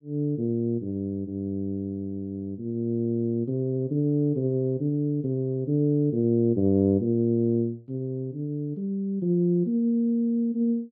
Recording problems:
none

